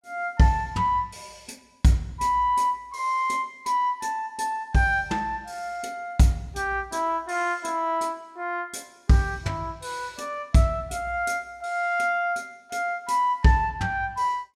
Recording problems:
none

